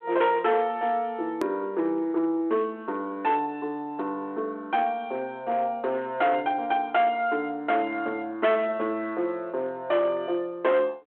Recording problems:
telephone audio; 260 Hz to 3.5 kHz, G.726
distorted audio; hard clipping, uneven, signal-to-distortion ratio 13 dB
edit click; at 1.5 s

